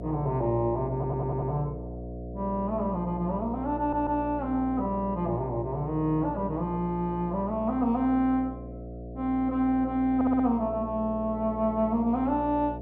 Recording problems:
mains hum; 60 Hz, harmonics up to 720 Hz, SNR 11 dB
stutter; at 1 s, at 4 s and at 10 s

